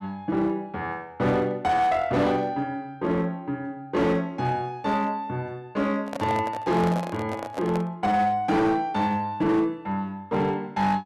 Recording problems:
distortion; hard clipping, uneven, signal-to-distortion ratio 12 dB
microphone handling noise; from 6 to 8 s; peak -3 dB vs average level

